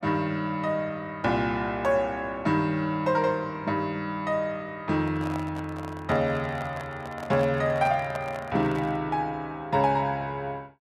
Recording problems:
handling noise; from 5 to 9 s; peak -5 dB vs average level

